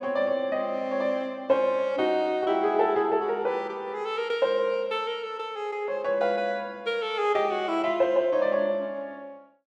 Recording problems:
none

